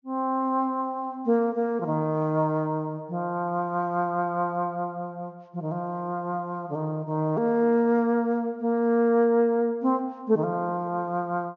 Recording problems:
low-pass filter; nothing above 6.7 kHz

